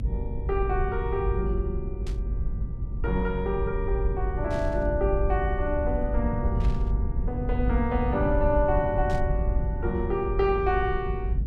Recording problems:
low-frequency rumble; below 84 Hz, SNR 1 dB
static burst; 4 times, first at 2 s; peak -12 dB vs average level

